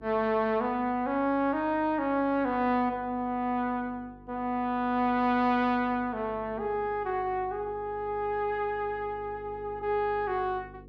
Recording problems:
electrical hum; 50 Hz, harmonics up to 500 Hz, SNR 22 dB

